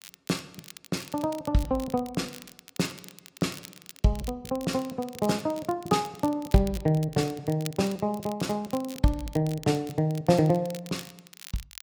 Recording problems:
lossy compression; AAC, log-spectral distance 2 dB
crackle; vinyl, SNR 17 dB

